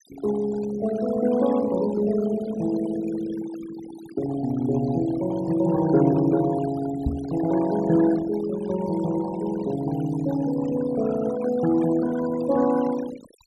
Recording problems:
denoising artefacts; signal-to-artefact ratio 14 dB
microphone bump; at 7 s; peak +1 dB vs average level

